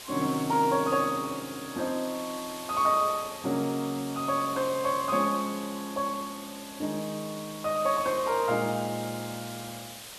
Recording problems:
background hiss; slope 0 dB per octave, SNR 12 dB

